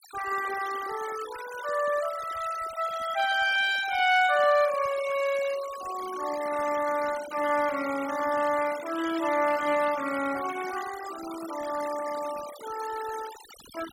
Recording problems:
denoising artefacts; signal-to-artefact ratio 13 dB

